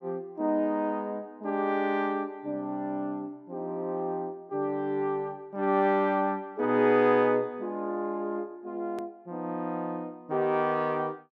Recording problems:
hard cut with a click; at 9 s

